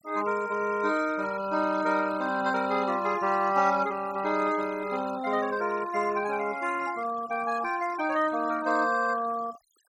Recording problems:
denoising artefacts; signal-to-artefact ratio 17 dB

